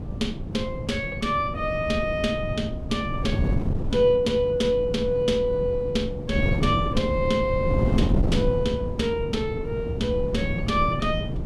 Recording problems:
wind noise; below 220 Hz, SNR 3 dB

